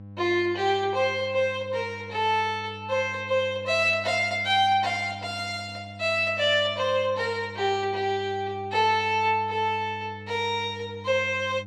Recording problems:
hum; 50 Hz, harmonics up to 800 Hz, SNR 17 dB

